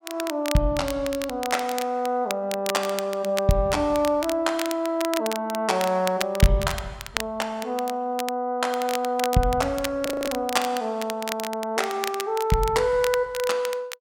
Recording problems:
crackling; vinyl, SNR 10 dB
frozen audio; at 10 s

